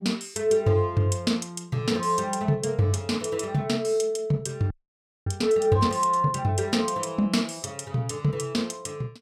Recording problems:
frozen audio; at 4.5 s for 0.5 s

